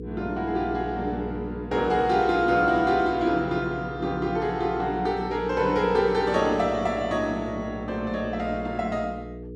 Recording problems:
hum; 60 Hz, harmonics up to 480 Hz, SNR 12 dB

